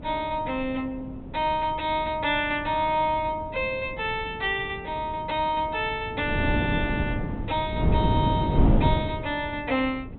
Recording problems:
treble missing; nothing above 3.9 kHz
wind on the microphone; below 260 Hz, SNR 1 dB

